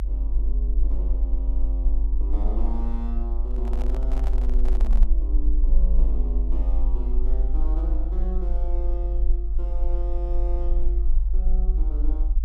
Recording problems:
low-frequency rumble; below 48 Hz, SNR -13 dB
microphone handling noise; from 3.5 to 5 s; peak +2 dB vs average level

